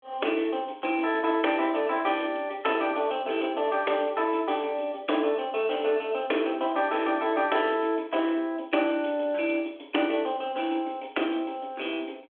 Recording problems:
telephone audio; 260 Hz to 3.5 kHz, G.726

